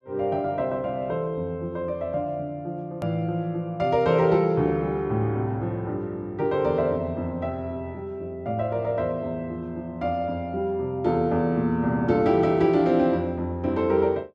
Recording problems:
click at an edit; at 3 s

